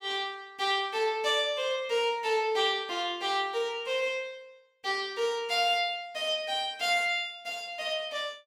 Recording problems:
none

